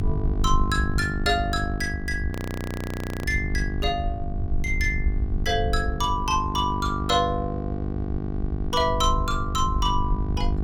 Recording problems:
hum; 50 Hz, harmonics up to 1.2 kHz, SNR 6 dB
low-frequency rumble; below 72 Hz, SNR 4 dB
frozen audio; at 2.5 s for 1 s

